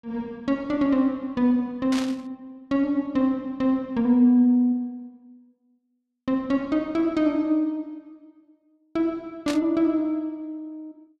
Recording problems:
static burst; at 2 s and at 9.5 s; peak -4 dB vs average level

